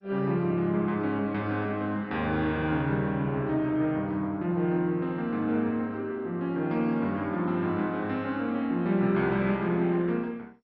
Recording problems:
lossy codec; MP2, log-spectral distance 2 dB, nothing above 5.3 kHz

